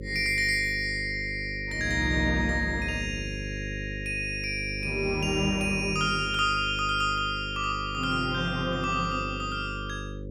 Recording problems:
hum; 50 Hz, harmonics up to 550 Hz, SNR 10 dB

